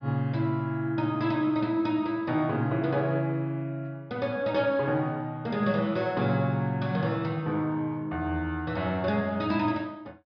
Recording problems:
treble missing; nothing above 5.5 kHz

